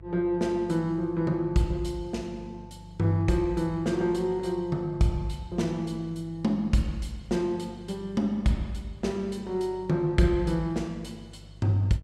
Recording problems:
mains hum; 50 Hz, harmonics up to 650 Hz, SNR 20 dB

